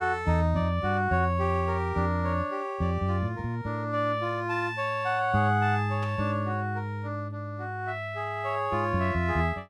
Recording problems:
static burst; at 6 s; peak -13 dB vs average level

